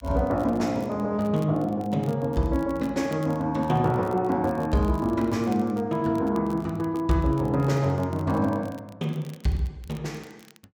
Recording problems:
crackle; vinyl, SNR 27 dB

